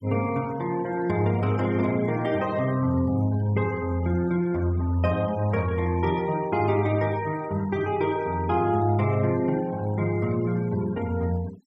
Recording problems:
denoising artefacts; signal-to-artefact ratio 22 dB

